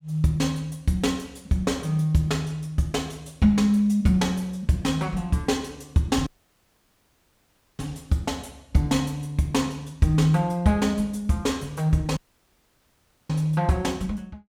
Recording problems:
audio cutting out; at 6.5 s for 1.5 s and at 12 s for 1 s

